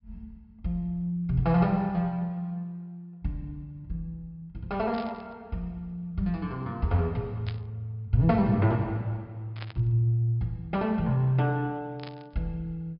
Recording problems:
low-pass filter; nothing above 5.5 kHz
static burst; 4 times, first at 5 s; peak -8 dB vs average level

